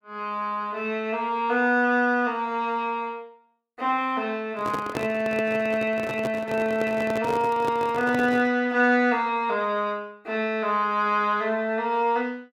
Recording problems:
handling noise; from 4.5 to 8.5 s; peak 0 dB vs average level

